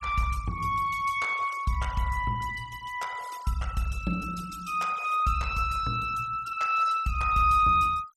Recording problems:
denoising artefacts; signal-to-artefact ratio 18 dB

